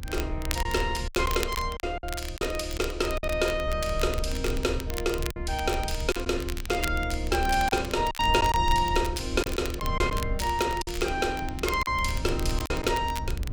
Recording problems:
rumble; below 72 Hz, strongest tone 28 Hz, SNR 7 dB
crackle; vinyl, SNR 12 dB
packet loss; 6% of the sound replaced, filled with silence

